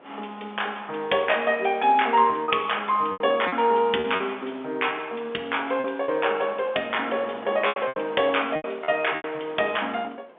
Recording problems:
phone line; 280 Hz to 3.5 kHz, G.711
wind noise; below 1.2 kHz, SNR 22 dB
lost packets; 7% of the sound replaced, filled with repeated pitch periods

